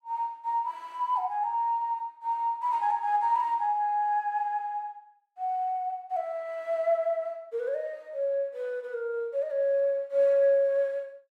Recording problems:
none

